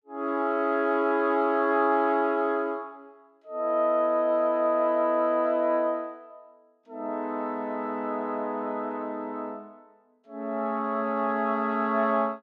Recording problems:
none

